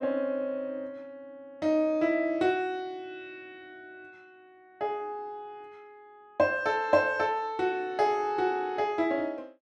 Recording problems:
none

